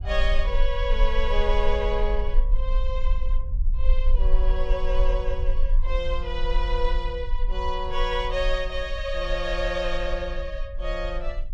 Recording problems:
low-frequency rumble; below 40 Hz, strongest tone 22 Hz, SNR -1 dB

